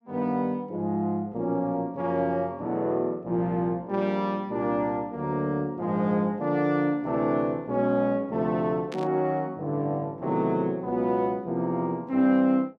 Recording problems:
burst of static; at 9 s; peak -10 dB vs average level

